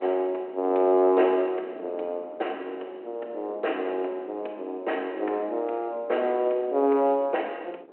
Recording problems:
telephone audio; 300 Hz to 3.1 kHz, G.726
wind noise; below 560 Hz, SNR 21 dB

